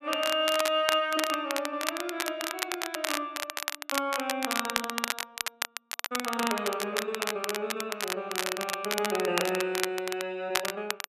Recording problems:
crackle; vinyl, SNR 2 dB

